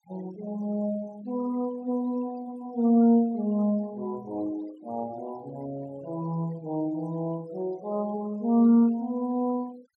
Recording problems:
denoising artefacts; signal-to-artefact ratio 25 dB

